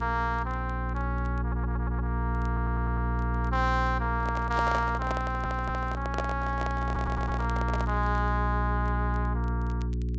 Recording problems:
treble missing; nothing above 8 kHz
hum; 60 Hz, harmonics up to 420 Hz, SNR 0 dB
crackle; vinyl, SNR 29 dB
audio stuttering; 4 times, first at 1.5 s
handling noise; from 4 to 8 s; peak +3 dB vs average level

